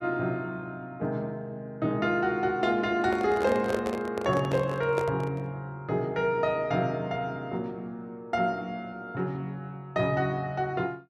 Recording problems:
microphone handling noise; from 3 to 5.5 s; peak +1 dB vs average level

